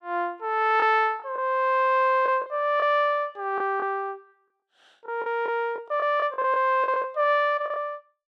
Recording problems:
lost packets; 8% of the sound replaced, filled with the last packet

